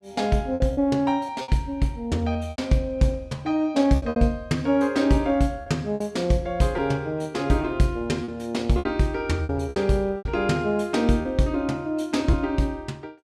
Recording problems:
packet loss; 7% of the sound replaced, filled with repeated pitch periods

